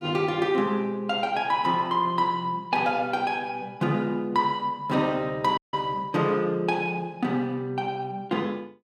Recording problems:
dropout; at 5.5 s

